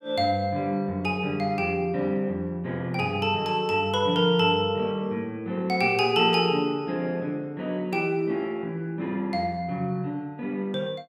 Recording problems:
none

